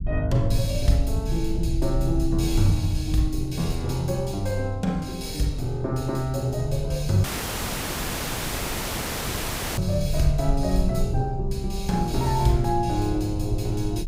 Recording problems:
low-frequency rumble; below 76 Hz, SNR 5 dB
audio cutting out; at 7 s for 2.5 s

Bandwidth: 15.5 kHz